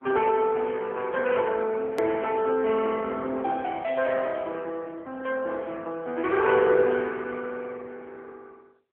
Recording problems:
phone line; 280 Hz to 3.1 kHz, AMR-NB
edit click; at 2 s

